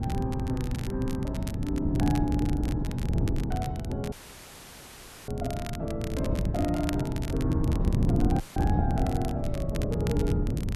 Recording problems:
wind noise; below 200 Hz, SNR -2 dB
crackling; vinyl, SNR 13 dB
audio cutting out; at 4 s for 1 s and at 8.5 s; filled with static

